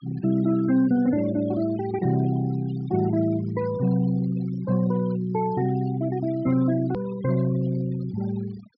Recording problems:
low-pass filter; nothing above 5.5 kHz
noise reduction artefacts; signal-to-artefact ratio 18 dB
hard cut with a click; at 7 s

